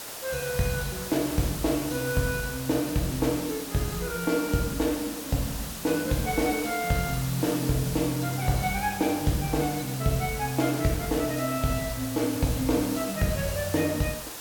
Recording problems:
background hiss; slope -2 dB per octave, SNR 8 dB

